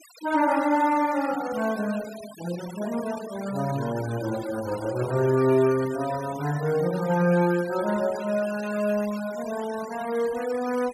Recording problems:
denoising artefacts; signal-to-artefact ratio 16 dB

